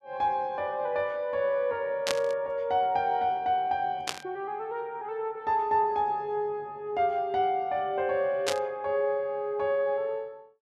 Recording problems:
burst of static; at 2 s, at 4 s and at 8.5 s; peak +4 dB vs average level

